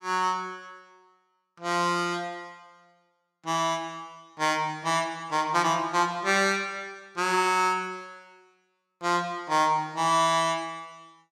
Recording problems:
none

